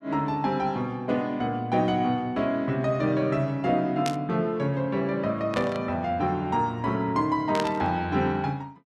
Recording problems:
static burst; at 4 s, at 5.5 s and at 7.5 s; peak -1 dB vs average level

